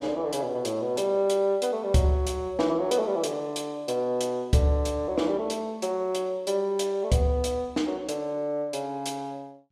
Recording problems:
none

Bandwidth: 14.5 kHz